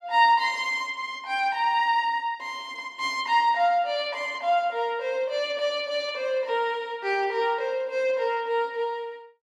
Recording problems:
none

